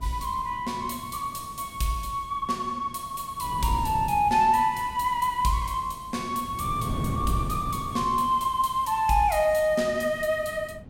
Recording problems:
wind noise; below 240 Hz, SNR 12 dB

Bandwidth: 16 kHz